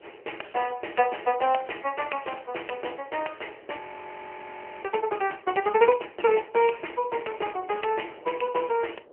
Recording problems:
phone line; 320 Hz to 3 kHz, AMR-NB
wind noise; below 630 Hz, SNR 23 dB
frozen audio; at 4 s for 1 s

